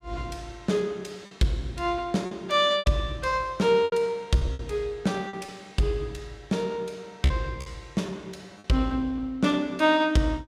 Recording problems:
packet loss; 5% of the sound replaced, filled with repeated pitch periods

